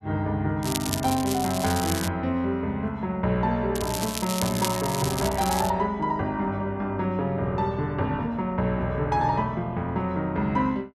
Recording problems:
crackle; from 0.5 to 2 s and from 4 to 5.5 s; loose cable, SNR 6 dB

